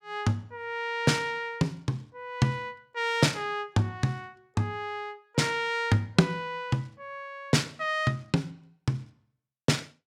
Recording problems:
none

